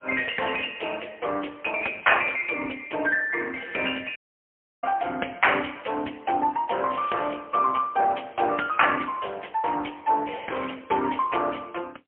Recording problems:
phone line; 320 Hz to 3.2 kHz, AMR-NB, then MP3
dropout; at 4 s for 0.5 s

